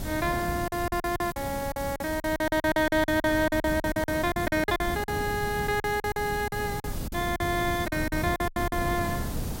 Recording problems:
hiss; SNR 13 dB
wind on the microphone; below 270 Hz, SNR 8 dB
packet loss; 16% of the sound replaced, filled with silence

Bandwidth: 16 kHz